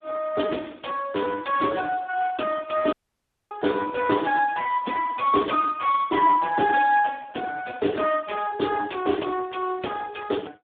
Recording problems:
telephone audio; 240 Hz to 2.9 kHz, Speex
audio cutting out; at 3 s for 0.5 s

